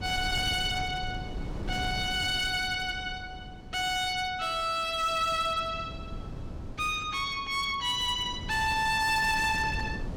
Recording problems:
distorted audio; hard clipping, signal-to-distortion ratio 11 dB
wind noise; below 250 Hz, SNR 12 dB

